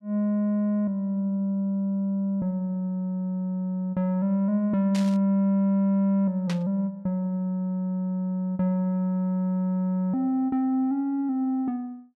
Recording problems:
static burst; at 5 s and at 6.5 s; peak -6 dB vs average level

